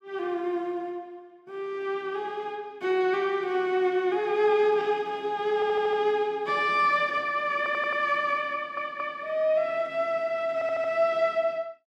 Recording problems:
stutter; 4 times, first at 5.5 s

